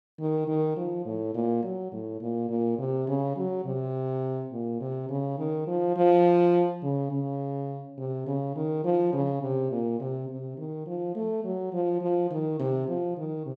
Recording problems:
none

